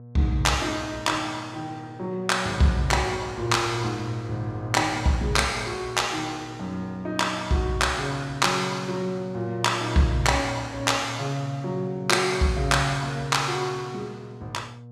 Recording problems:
hum; 60 Hz, harmonics up to 720 Hz, SNR 18 dB

